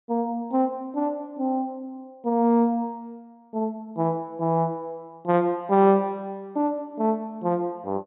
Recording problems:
treble missing; nothing above 3.9 kHz

